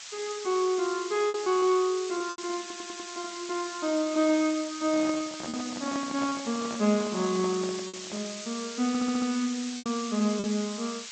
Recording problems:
codec artefacts; G.722, then MP3, log-spectral distance 17 dB, nothing above 8 kHz
background hiss; slope +5 dB per octave, SNR 10 dB
packet loss; 5% of the sound replaced, filled with repeated pitch periods
stutter; at 2.5 s and at 9 s
microphone handling noise; from 5 to 8.5 s; peak -5 dB vs average level

